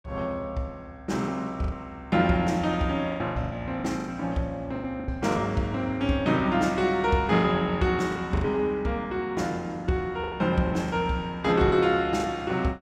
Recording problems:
packet loss; 9% of the sound replaced, filled with the last packet

